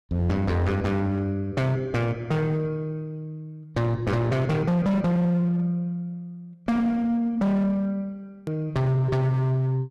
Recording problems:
distortion; hard clipping, uneven, signal-to-distortion ratio 8 dB
hard cut with a click; at 8.5 s

